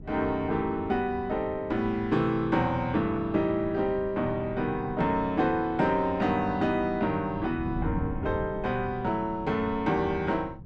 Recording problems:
wind on the microphone; below 190 Hz, SNR 13 dB

